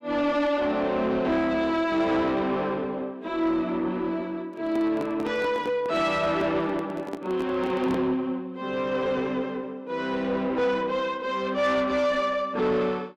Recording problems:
distorted audio; soft clipping, signal-to-distortion ratio 10 dB
handling noise; from 4.5 to 8 s; peak 0 dB vs average level

